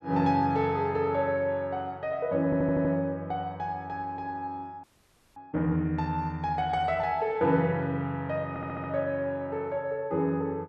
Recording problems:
audio stuttering; at 2.5 s and at 8.5 s
frozen audio; at 5 s for 0.5 s

